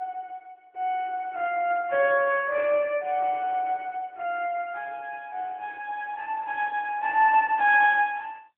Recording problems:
phone line; 340 Hz to 3.5 kHz, AMR-NB

